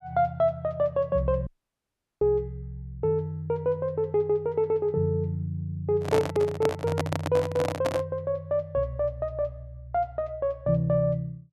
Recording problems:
audio cutting out; at 1.5 s for 0.5 s
microphone handling noise; from 6 to 8 s; peak +3 dB vs average level

